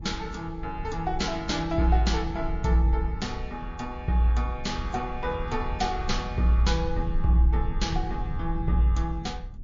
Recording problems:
codec artefacts; MP3, log-spectral distance 2 dB, nothing above 6.5 kHz
rumble; below 72 Hz, SNR 8 dB

